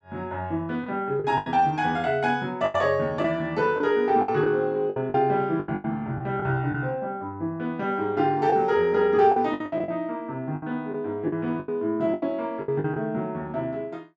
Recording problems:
packet loss; 9% of the sound replaced, filled with the last packet

